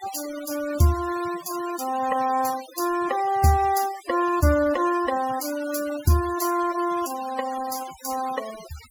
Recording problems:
denoising artefacts; signal-to-artefact ratio 15 dB

